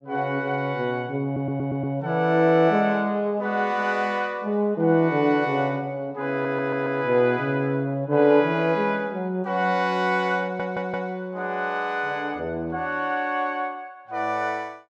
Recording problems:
stutter; at 1.5 s, at 6.5 s and at 10 s

